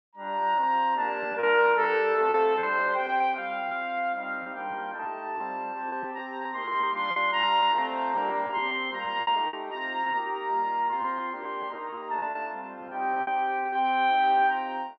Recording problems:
packet loss; 9% of the sound replaced, filled with repeated pitch periods

